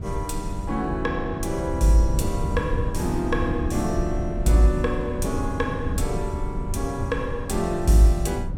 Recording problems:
rumble; below 120 Hz, SNR 5 dB

